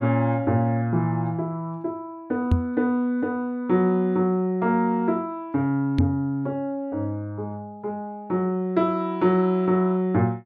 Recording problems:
knock on the microphone; at 2.5 s and at 6 s; peak +7 dB vs average level

